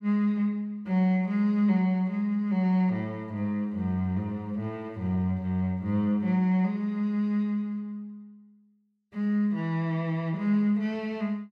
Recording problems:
none

